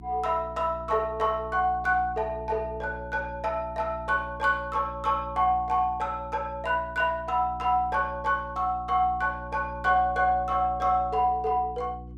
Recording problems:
electrical hum; 60 Hz, harmonics up to 360 Hz, SNR 16 dB

